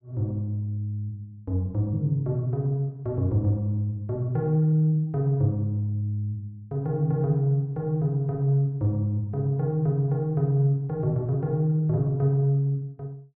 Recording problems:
none

